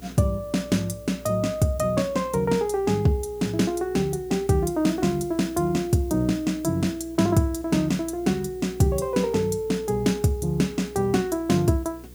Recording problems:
electrical hum; 60 Hz, harmonics up to 480 Hz, SNR 22 dB
background hiss; slope 0 dB per octave, SNR 27 dB

